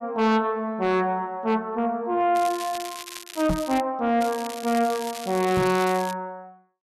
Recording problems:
distorted audio; soft clipping, signal-to-distortion ratio 8 dB
crackling; from 2.5 to 4 s and from 4 to 6 s; loose cable, SNR 13 dB
microphone thump; at 3.5 s and at 5.5 s; peak +1 dB vs average level

